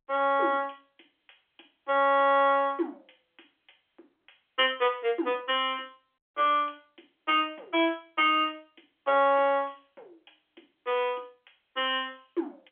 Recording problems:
phone line; 260 Hz to 3.4 kHz, G.711

